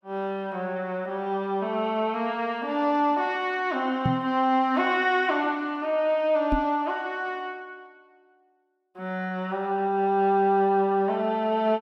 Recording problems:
knock on the microphone; at 4 s and at 6.5 s; peak +3 dB vs average level

